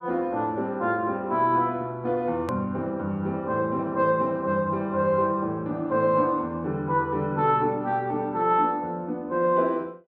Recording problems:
hard cut with a click; at 2.5 s

